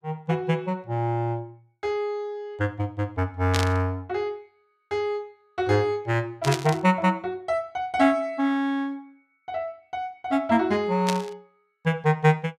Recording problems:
static burst; at 3.5 s, at 6.5 s and at 11 s; peak +3 dB vs average level

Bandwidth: 15.5 kHz